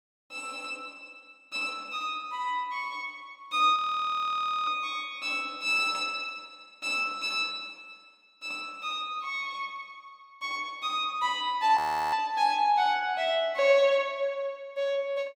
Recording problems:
audio freezing; at 4 s for 1 s and at 12 s

